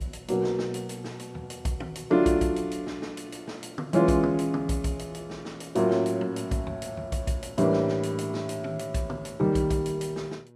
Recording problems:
electrical hum; 60 Hz, harmonics up to 1.4 kHz, SNR 26 dB

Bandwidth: 13.5 kHz